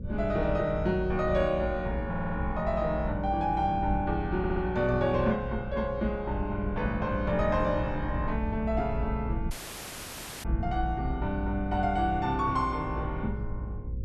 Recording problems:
electrical hum; 60 Hz, harmonics up to 540 Hz, SNR 15 dB
rumble; below 82 Hz, strongest tone 56 Hz, SNR 7 dB
stutter; at 2 s and at 4.5 s
audio cutting out; at 9.5 s for 1 s

